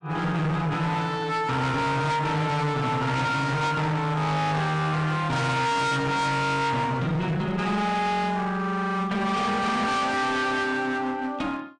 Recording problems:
lossy compression; MP3, log-spectral distance 2 dB, nothing above 8.7 kHz
distortion; hard clipping, uneven, signal-to-distortion ratio 6 dB

